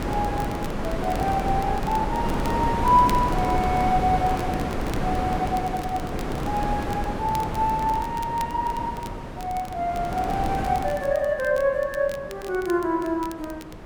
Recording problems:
wind on the microphone; below 650 Hz, SNR 3 dB
crackle; vinyl, SNR 20 dB

